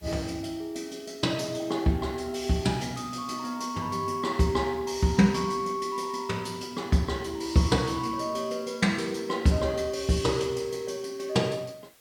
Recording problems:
background hiss; slope -1 dB per octave, SNR 29 dB

